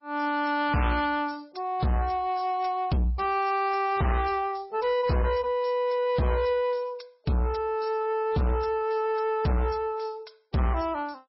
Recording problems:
lossy codec; MP3, log-spectral distance 4 dB, nothing above 5.5 kHz
distortion; soft clipping, signal-to-distortion ratio 7 dB

